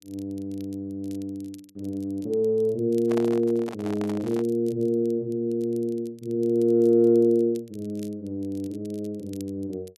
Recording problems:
crackle; vinyl, SNR 29 dB
microphone handling noise; from 3 to 4.5 s; peak -4 dB vs average level

